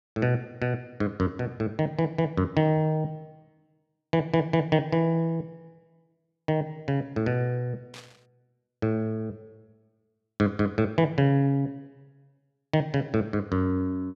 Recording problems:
burst of static; at 8 s; peak -13 dB vs average level

